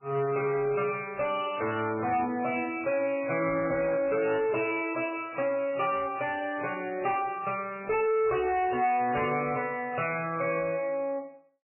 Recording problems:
codec artefacts; MP3, log-spectral distance 4 dB, nothing above 2.4 kHz
distorted audio; soft clipping, signal-to-distortion ratio 10 dB

